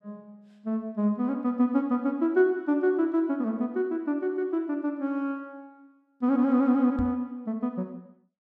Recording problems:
microphone bump; at 7 s; peak -2 dB vs average level

